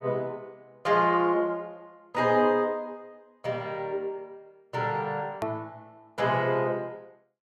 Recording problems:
edit click; at 5.5 s

